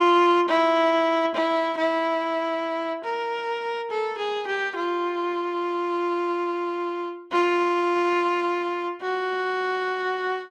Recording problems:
none

